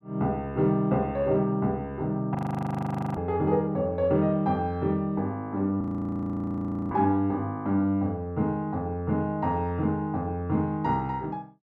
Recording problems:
frozen audio; at 2.5 s for 1 s and at 6 s for 1 s

